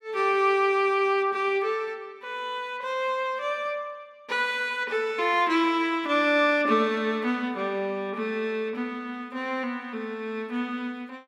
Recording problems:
none

